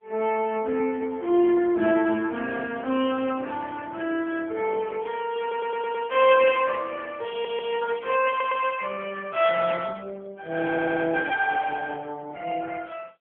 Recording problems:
phone line; 240 Hz to 3.3 kHz, AMR-NB
audio stuttering; 4 times, first at 5.5 s

